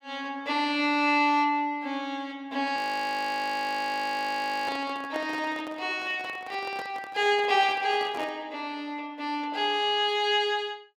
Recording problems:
handling noise; from 2.5 to 8.5 s; peak -6 dB vs average level
audio freezing; at 3 s for 2 s

